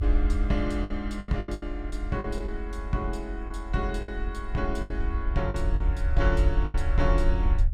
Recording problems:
low-frequency rumble; below 56 Hz, SNR -1 dB
lost packets; 9% of the sound replaced, filled with the last packet

